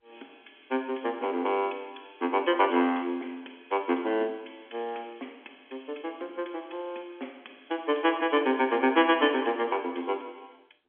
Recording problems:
phone line; 220 Hz to 3.4 kHz, G.711

